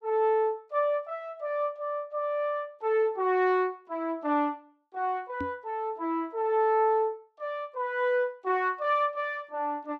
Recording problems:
knock on the microphone; at 5.5 s; peak -3 dB vs average level

